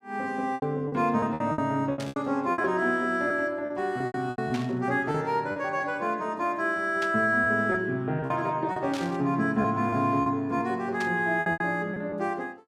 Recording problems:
lost packets; 10% of the sound replaced, filled with repeated pitch periods
static burst; 5 times, first at 2 s; peak -6 dB vs average level

